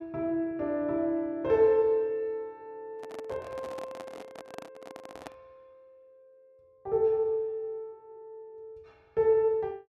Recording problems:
microphone handling noise; from 3 to 5.5 s; peak -9 dB vs average level

